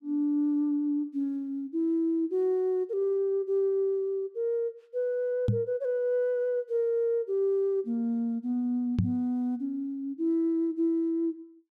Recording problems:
microphone thump; at 5.5 s and at 9 s; peak +6 dB vs average level

